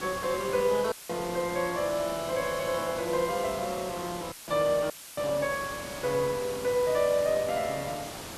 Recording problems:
background hiss; slope -3 dB per octave, SNR 10 dB
audio cutting out; at 1 s, at 4.5 s and at 5 s; filled with static

